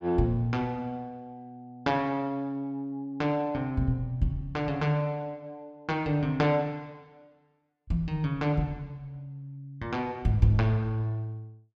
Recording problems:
none

